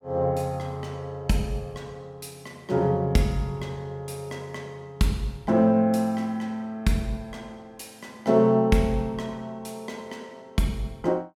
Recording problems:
none

